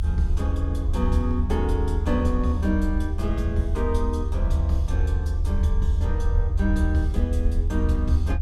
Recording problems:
rumble; below 78 Hz, SNR -2 dB

